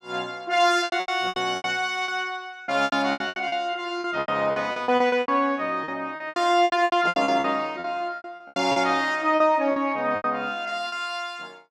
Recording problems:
packet loss; 18% of the sound replaced, filled with repeated pitch periods

